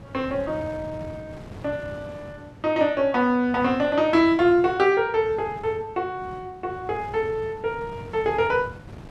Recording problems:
wind on the microphone; below 420 Hz, SNR 18 dB

